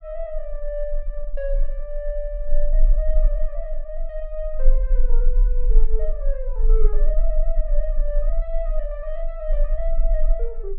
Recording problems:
low-frequency rumble; below 34 Hz, strongest tone 18 Hz, SNR -7 dB

